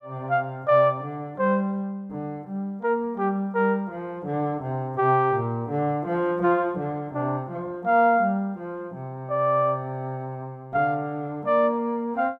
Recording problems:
none

